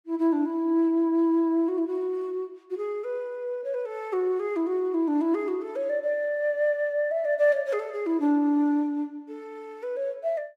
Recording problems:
none

